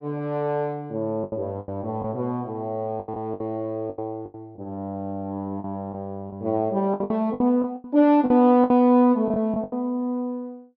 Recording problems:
treble cut off; nothing above 5.7 kHz
lost packets; 11% of the sound replaced, filled with the last packet

